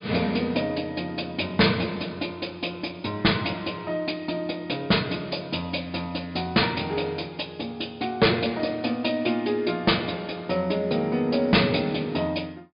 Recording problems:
treble cut off; nothing above 5 kHz
distortion; hard clipping, signal-to-distortion ratio 8 dB

